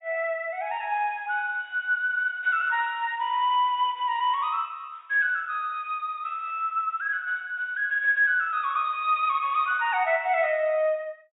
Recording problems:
treble cut off; nothing above 4 kHz

